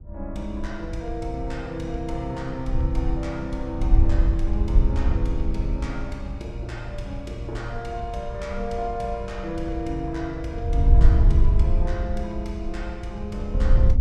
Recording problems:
wind noise; below 64 Hz, SNR -6 dB

